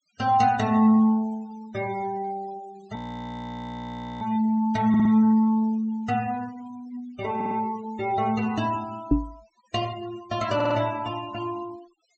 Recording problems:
treble missing; nothing above 8 kHz
denoising artefacts; signal-to-artefact ratio 22 dB
audio freezing; at 3 s for 1.5 s
audio stuttering; at 5 s, at 7.5 s and at 11 s
knock on the microphone; at 9 s; peak +8 dB vs average level

